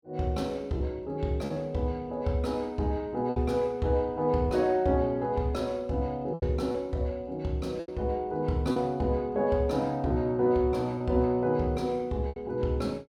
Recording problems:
packet loss; 4% of the sound replaced, filled with repeated pitch periods

